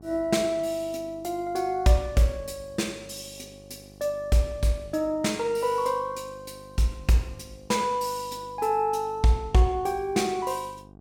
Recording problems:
hum; 50 Hz, harmonics up to 1.1 kHz, SNR 23 dB

